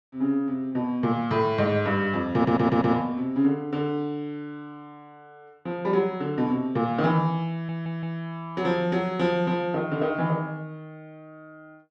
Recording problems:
audio stuttering; at 2.5 s and at 7.5 s

